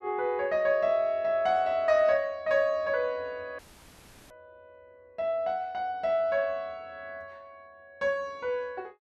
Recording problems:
dropout; at 3.5 s for 0.5 s

